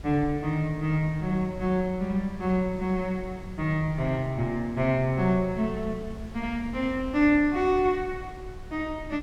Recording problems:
wind on the microphone; below 130 Hz, SNR 15 dB

